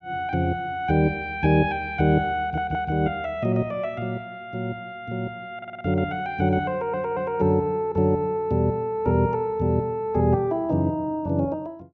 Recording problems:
stutter; at 2.5 s, at 5.5 s and at 6.5 s

